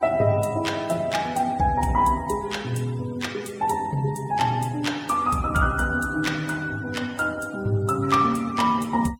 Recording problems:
denoising artefacts; signal-to-artefact ratio 21 dB

